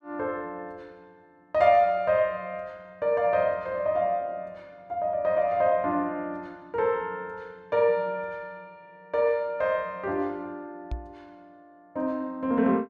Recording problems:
microphone bump; at 11 s; peak -3 dB vs average level

